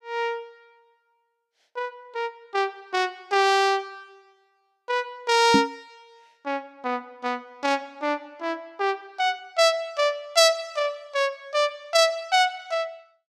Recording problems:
knock on the microphone; at 5.5 s; peak +7 dB vs average level

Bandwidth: 14.5 kHz